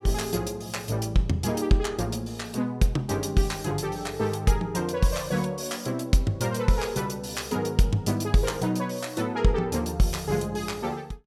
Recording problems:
none

